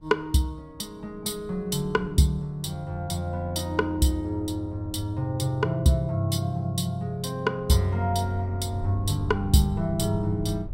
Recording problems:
wind on the microphone; below 110 Hz, SNR 15 dB

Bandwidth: 16 kHz